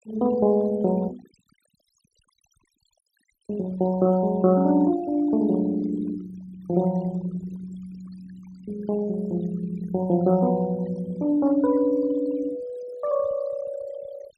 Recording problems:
denoising artefacts; signal-to-artefact ratio 21 dB

